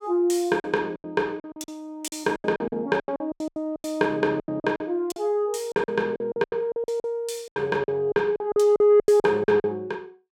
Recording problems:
packet loss; 18% of the sound replaced, filled with silence

